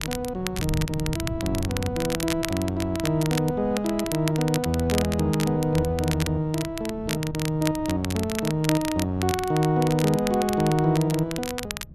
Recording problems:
wind on the microphone; below 150 Hz, SNR 14 dB
crackle; vinyl, SNR 9 dB

